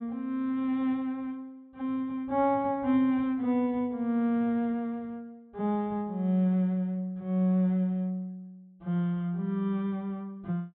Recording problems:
low-pass filter; nothing above 4 kHz

